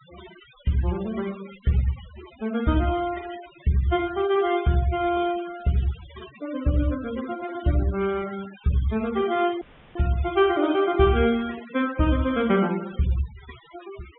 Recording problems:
treble cut off; nothing above 3.6 kHz
noise reduction artefacts; signal-to-artefact ratio 18 dB
audio cutting out; at 9.5 s

